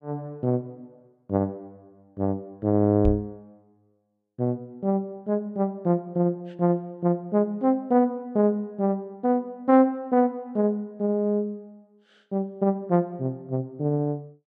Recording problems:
knock on the microphone; at 3 s; peak +4 dB vs average level

